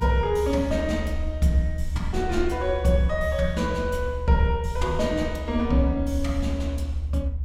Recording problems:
electrical hum; 60 Hz, harmonics up to 1.1 kHz, SNR 22 dB
low-frequency rumble; below 74 Hz, SNR 6 dB

